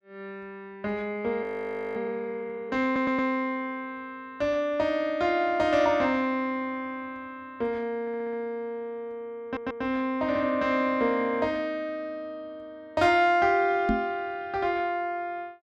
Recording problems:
frozen audio; at 1.5 s for 0.5 s
audio stuttering; at 3 s, at 8 s and at 9.5 s
microphone bump; at 14 s; peak +4 dB vs average level

